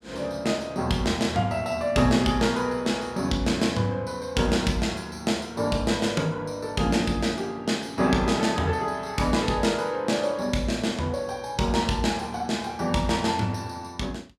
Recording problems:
none

